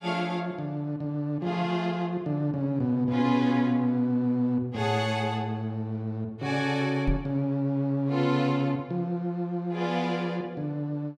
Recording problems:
knock on the microphone; at 7 s; peak +2 dB vs average level

